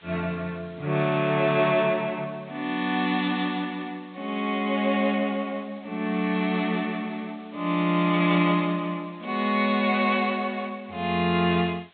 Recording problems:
low-pass filter; nothing above 4 kHz
hiss; SNR 29 dB

